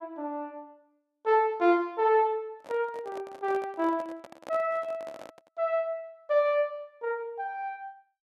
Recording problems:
microphone handling noise; from 2.5 to 5.5 s; peak -9 dB vs average level

